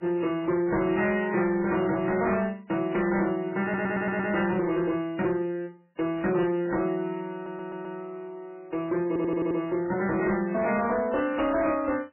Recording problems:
codec artefacts; MP3, log-spectral distance 3 dB, nothing above 2.5 kHz
distorted audio; hard clipping, signal-to-distortion ratio 11 dB
audio stuttering; at 3.5 s, at 7.5 s and at 9 s

